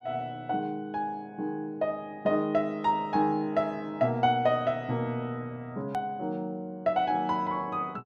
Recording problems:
edit click; at 6 s

